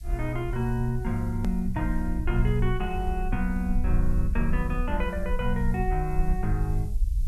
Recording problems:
hiss; SNR 27 dB
low-frequency rumble; below 52 Hz, SNR 2 dB
hard cut with a click; at 1.5 s

